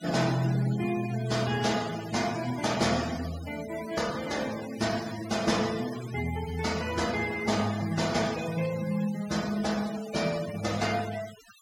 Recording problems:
denoising artefacts; signal-to-artefact ratio 13 dB

